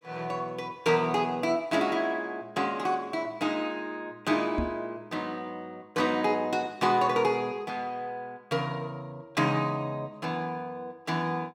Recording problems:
knock on the microphone; at 4.5 s; peak +3 dB vs average level

